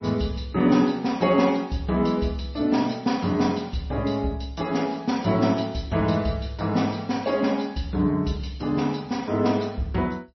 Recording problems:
lossy compression; MP3, log-spectral distance 3 dB, nothing above 5.8 kHz

